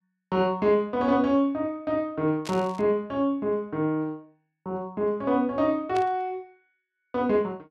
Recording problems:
static burst; at 2.5 s and at 6 s; peak -7 dB vs average level

